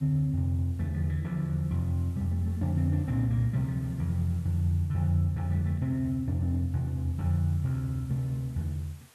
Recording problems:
background hiss; slope -1 dB per octave, SNR 29 dB

